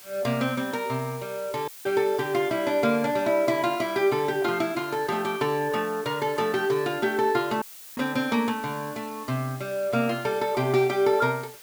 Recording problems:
hiss; slope +1 dB per octave, SNR 19 dB
dropout; at 1.5 s and at 7.5 s; filled with static

